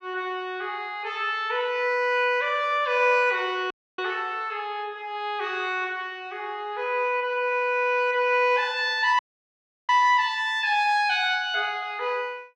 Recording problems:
audio cutting out; at 3.5 s and at 9 s for 0.5 s

